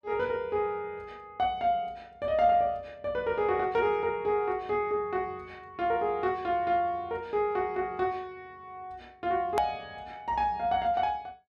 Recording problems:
click at an edit; at 9.5 s

